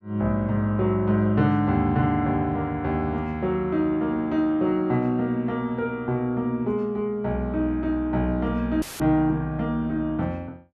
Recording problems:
audio cutting out; at 9 s; filled with static

